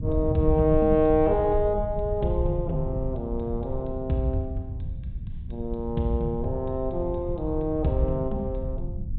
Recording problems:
treble cut off; nothing above 4 kHz
rumble; below 98 Hz, SNR 7 dB

